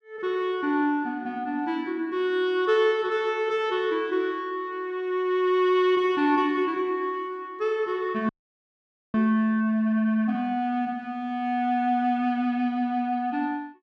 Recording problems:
audio freezing; at 8.5 s for 1 s

